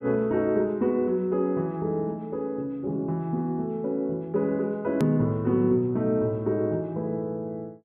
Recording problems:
treble missing; nothing above 3.6 kHz
click at an edit; at 5 s

